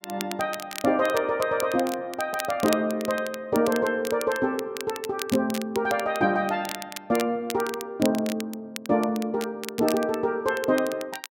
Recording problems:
crackle; vinyl, SNR 12 dB

